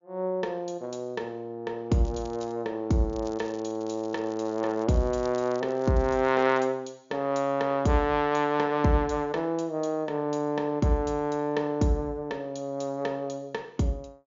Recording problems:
treble missing; nothing above 7.1 kHz
crackling; at 2 s and from 3 to 6.5 s; loose cable, SNR 25 dB

